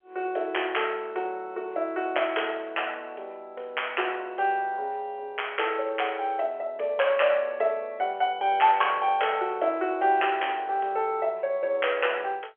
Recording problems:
telephone audio; 340 Hz to 3.3 kHz, G.711

